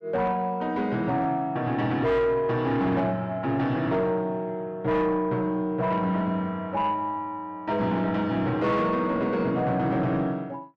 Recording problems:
distorted audio; soft clipping, signal-to-distortion ratio 12 dB

